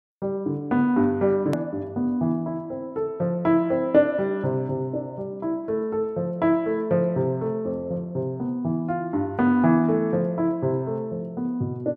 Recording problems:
edit click; at 1.5 s

